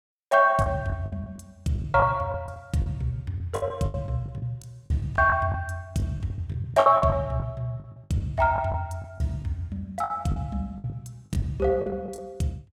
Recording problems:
packet loss; 13% of the sound replaced, filled with the last packet

